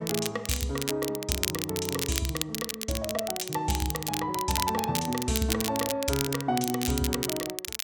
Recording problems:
crackle; vinyl, SNR 2 dB

